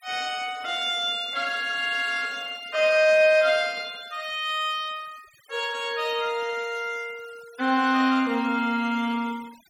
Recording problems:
noise reduction artefacts; signal-to-artefact ratio 24 dB

